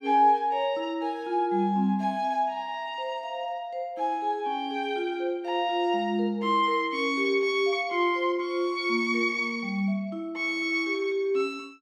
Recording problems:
none

